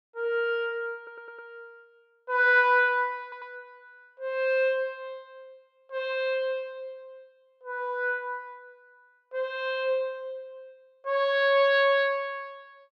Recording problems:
audio stuttering; at 1 s and at 3 s

